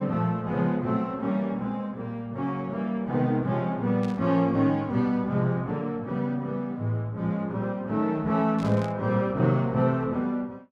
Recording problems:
static burst; at 4 s and at 8.5 s; peak -14 dB vs average level

